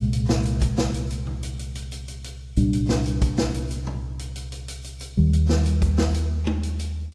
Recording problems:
codec artefacts; AAC, log-spectral distance 2 dB

